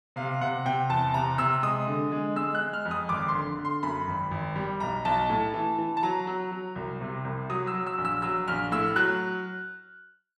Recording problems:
none

